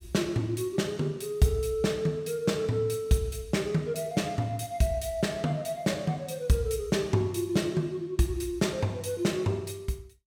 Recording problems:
none

